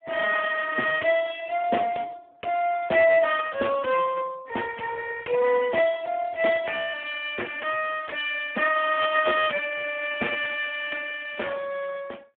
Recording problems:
telephone audio; 260 Hz to 2.5 kHz, Speex

